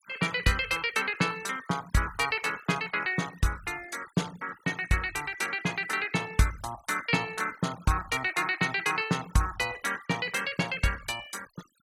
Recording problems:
noise reduction artefacts; signal-to-artefact ratio 18 dB

